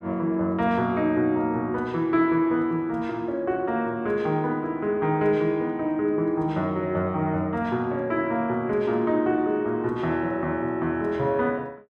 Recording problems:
none

